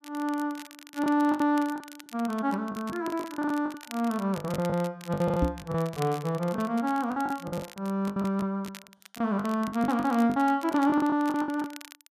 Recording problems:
crackling; vinyl, SNR 19 dB
packet loss; 14% of the sound replaced, filled with the last packet
microphone bump; at 5.5 s; peak +4 dB vs average level

